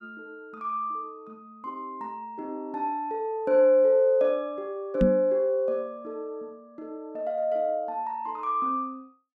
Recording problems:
microphone thump; at 5 s; peak +7 dB vs average level

